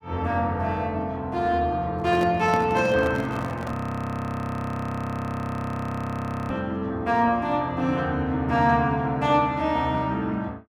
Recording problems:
handling noise; from 2 to 3.5 s; peak -2 dB vs average level
frozen audio; at 3.5 s for 3 s

